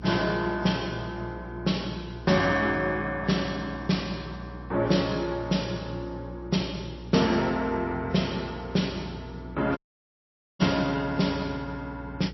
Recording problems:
codec artefacts; MP3, log-spectral distance 4 dB, nothing above 5.7 kHz
hum; 60 Hz, harmonics up to 480 Hz, SNR 14 dB
dropout; at 10 s for 1 s

